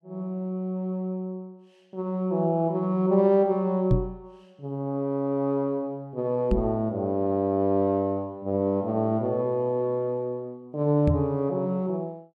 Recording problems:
knock on the microphone; at 4 s, at 6.5 s and at 11 s; peak +7 dB vs average level

